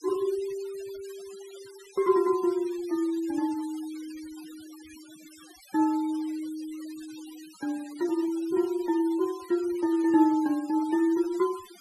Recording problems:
denoising artefacts; signal-to-artefact ratio 21 dB

